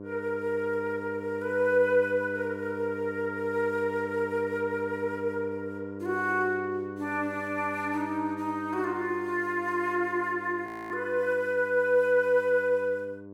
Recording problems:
hum; 50 Hz, harmonics up to 1 kHz, SNR 11 dB
frozen audio; at 11 s

